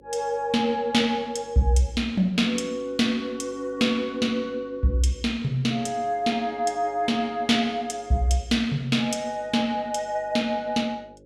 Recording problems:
hum; 50 Hz, harmonics up to 550 Hz, SNR 28 dB

